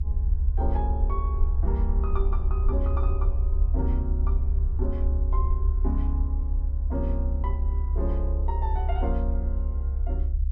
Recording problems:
rumble; below 70 Hz, strongest tone 36 Hz, SNR -9 dB

